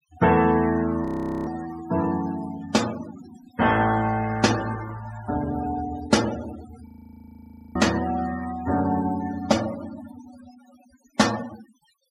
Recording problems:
noise reduction artefacts; signal-to-artefact ratio 14 dB
audio freezing; at 1 s and at 7 s for 1 s

